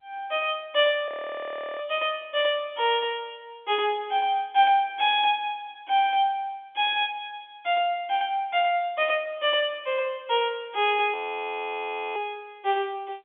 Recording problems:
telephone audio; 240 Hz to 3.5 kHz, G.711
audio freezing; at 1 s for 0.5 s and at 11 s for 1 s

